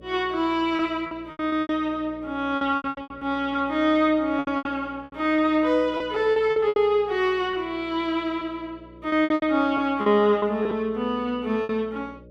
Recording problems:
hum; 60 Hz, harmonics up to 600 Hz, SNR 24 dB
lost packets; 12% of the sound replaced, filled with repeated pitch periods

